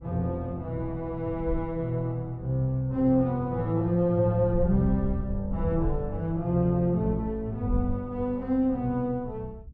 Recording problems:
wind noise; below 80 Hz, SNR 11 dB

